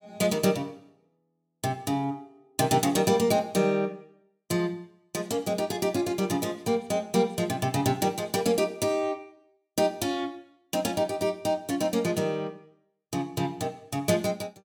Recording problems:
none

